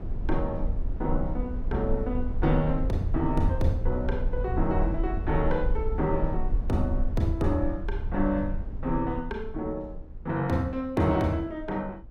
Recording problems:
low-frequency rumble; below 62 Hz, strongest tone 20 Hz, SNR 3 dB

